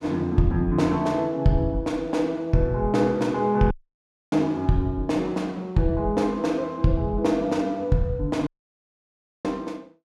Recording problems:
audio cutting out; at 3.5 s for 0.5 s and at 8.5 s for 1 s

